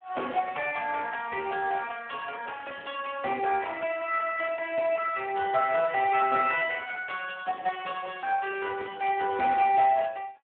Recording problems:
phone line; 280 Hz to 3.3 kHz, Speex

